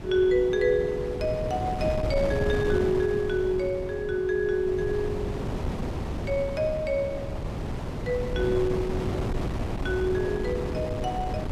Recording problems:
wind on the microphone; below 390 Hz, SNR 5 dB

